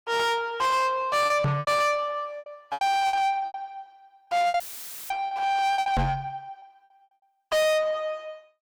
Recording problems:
distortion; soft clipping, signal-to-distortion ratio 6 dB
lost packets; 13% of the sound replaced, filled with repeated pitch periods
microphone bump; at 1.5 s and at 6 s; peak +4 dB vs average level
audio cutting out; at 4.5 s for 0.5 s; filled with static

